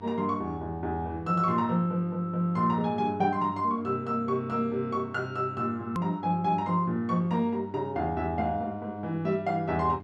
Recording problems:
hum; 50 Hz, harmonics up to 1.1 kHz, SNR 17 dB
edit click; at 6 s

